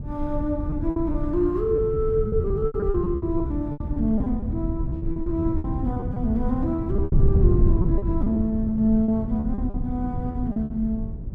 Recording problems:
wind on the microphone; below 120 Hz, SNR 2 dB
packet loss; 13% of the sound replaced, filled with repeated pitch periods

